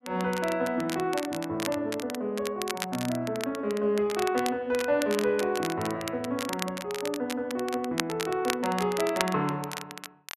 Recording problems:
crackling; vinyl, SNR 8 dB

